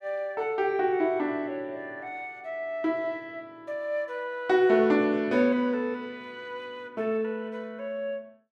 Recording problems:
none

